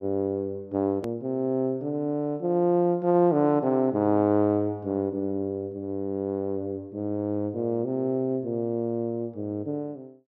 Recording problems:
edit click; at 1 s

